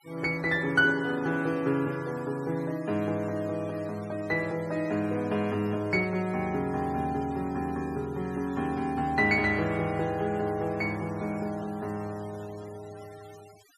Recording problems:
noise reduction artefacts; signal-to-artefact ratio 22 dB

